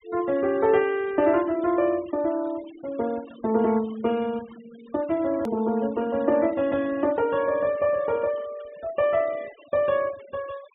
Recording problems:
treble cut off; nothing above 4 kHz
denoising artefacts; signal-to-artefact ratio 23 dB
click at an edit; at 5.5 s

